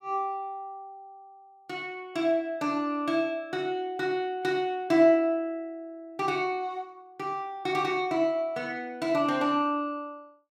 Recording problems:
none

